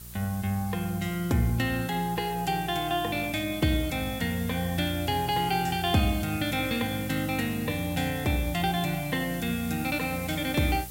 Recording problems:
hum; 60 Hz, harmonics up to 600 Hz, SNR 17 dB
background hiss; slope +1 dB per octave, SNR 14 dB

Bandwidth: 16 kHz